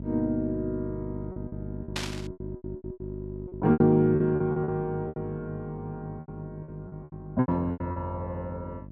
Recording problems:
hum; 50 Hz, harmonics up to 650 Hz, SNR 13 dB
packet loss; 14% of the sound replaced, filled with repeated pitch periods
burst of static; at 2 s; peak 0 dB vs average level

